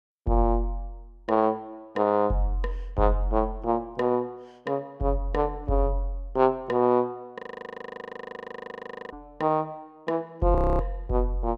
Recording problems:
frozen audio; at 7.5 s for 1.5 s and at 11 s

